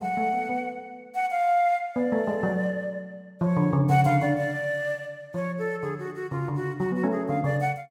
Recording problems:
none

